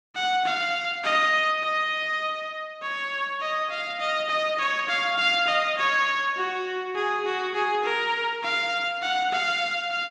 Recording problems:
none

